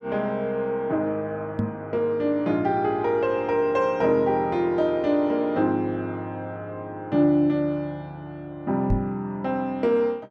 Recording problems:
microphone bump; at 1.5 s and at 9 s; peak +3 dB vs average level

